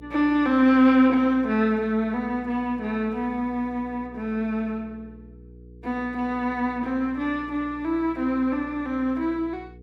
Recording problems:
hum; 60 Hz, harmonics up to 480 Hz, SNR 23 dB

